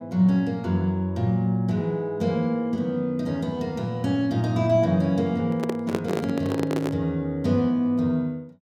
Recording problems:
microphone handling noise; from 5.5 to 7 s; peak +1 dB vs average level

